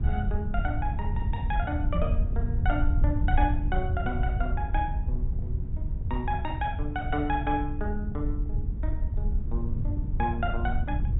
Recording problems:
treble cut off; nothing above 4 kHz
rumble; below 84 Hz, SNR -3 dB
knock on the microphone; at 2 s; peak +4 dB vs average level

